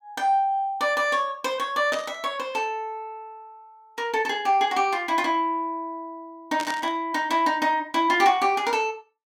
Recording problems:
burst of static; at 2 s and at 6.5 s; peak -5 dB vs average level

